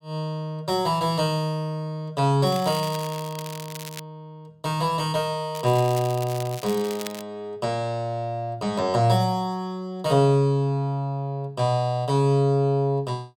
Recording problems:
crackling; from 2.5 to 4 s and from 5.5 to 7 s; loose cable, SNR 15 dB

